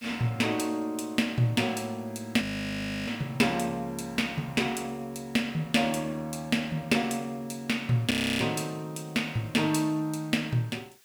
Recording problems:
hiss; slope +3 dB per octave, SNR 28 dB
audio freezing; at 2.5 s for 0.5 s and at 8 s

